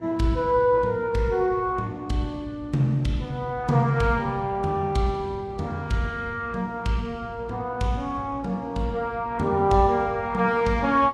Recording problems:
codec artefacts; Vorbis, then Vorbis, log-spectral distance 2 dB, nothing above 12.3 kHz
electrical hum; 60 Hz, harmonics up to 1.2 kHz, SNR 24 dB

